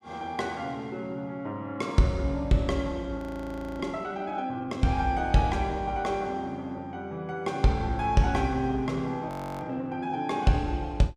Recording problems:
audio freezing; at 3 s for 0.5 s and at 9.5 s

